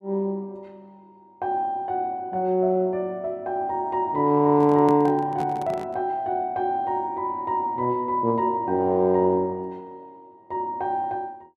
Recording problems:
handling noise; from 4.5 to 6 s; peak -6 dB vs average level

